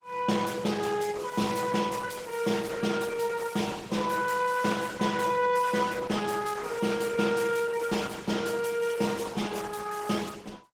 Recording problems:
lossy codec; Opus, then Opus, log-spectral distance 5 dB

